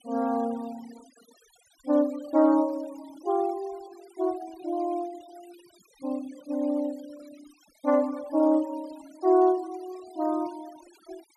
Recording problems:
denoising artefacts; signal-to-artefact ratio 24 dB

